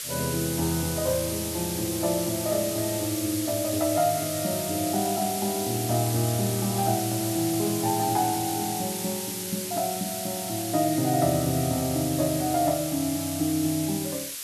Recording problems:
background hiss; SNR 4 dB

